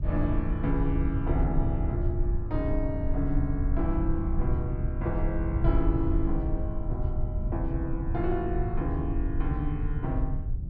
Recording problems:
low-frequency rumble; below 78 Hz, SNR -1 dB

